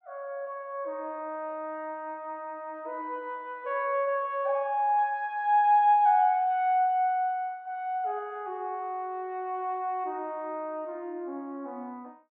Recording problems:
none

